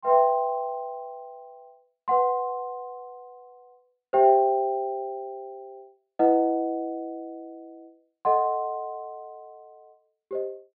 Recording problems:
treble missing; nothing above 4.8 kHz

